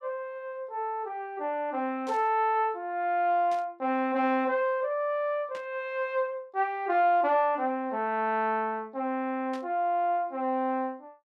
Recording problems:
burst of static; 4 times, first at 2 s; peak -14 dB vs average level

